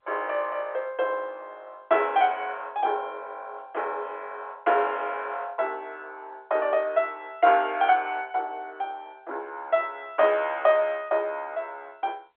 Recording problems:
telephone audio; 340 Hz to 3.5 kHz, G.711

